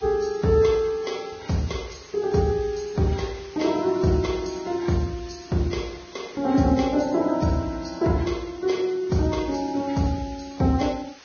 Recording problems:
codec artefacts; Vorbis, log-spectral distance 4 dB, nothing above 6.5 kHz
background hiss; slope 0 dB per octave, SNR 22 dB

